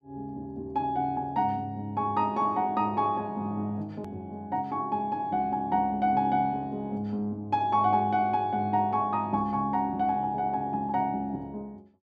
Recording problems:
click at an edit; at 4 s

